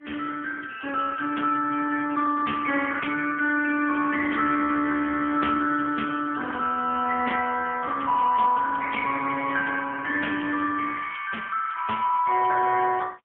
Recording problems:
phone line; 300 Hz to 2.2 kHz, AMR-NB, then MP3

